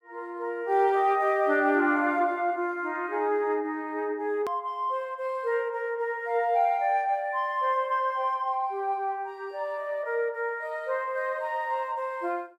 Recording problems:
click at an edit; at 4.5 s

